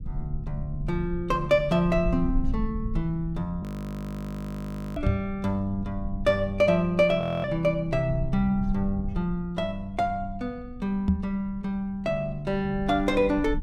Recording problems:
rumble; below 84 Hz, SNR 11 dB
frozen audio; at 3.5 s for 1.5 s and at 7 s
microphone bump; at 5 s and at 11 s; peak +6 dB vs average level

